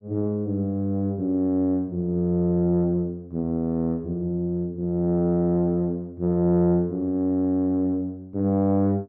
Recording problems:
none

